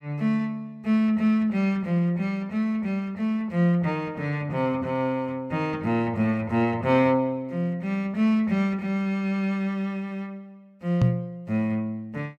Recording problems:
microphone thump; at 11 s; peak +8 dB vs average level

